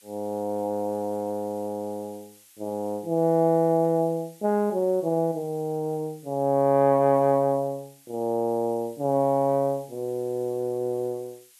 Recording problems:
background hiss; slope +4 dB per octave, SNR 27 dB

